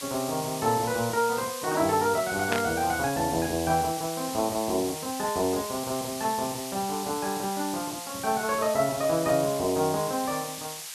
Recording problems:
hiss; slope +4 dB per octave, SNR 8 dB
burst of static; at 2.5 s; peak +2 dB vs average level

